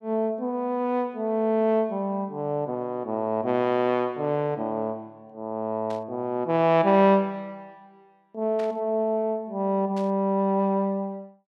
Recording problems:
burst of static; at 6 s, at 8.5 s and at 10 s; peak -14 dB vs average level

